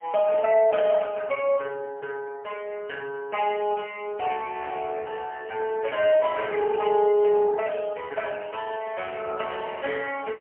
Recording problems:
phone line; 300 Hz to 2.9 kHz, AMR-NB, then MP3

